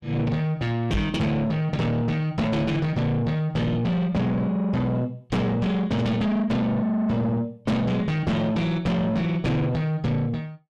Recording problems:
distorted audio; soft clipping, signal-to-distortion ratio 7 dB
microphone thump; at 1 s; peak +3 dB vs average level

